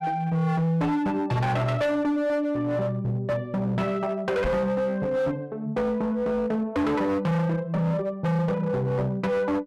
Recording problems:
distorted audio; hard clipping, signal-to-distortion ratio 7 dB
microphone bump; at 4.5 s; peak +1 dB vs average level

